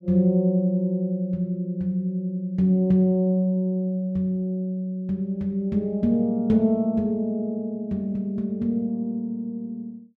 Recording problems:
none

